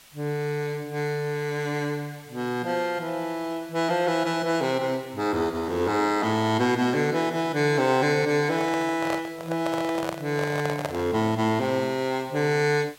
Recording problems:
hiss; slope +1 dB per octave, SNR 24 dB
handling noise; from 8.5 to 11 s; peak 0 dB vs average level

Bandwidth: 16 kHz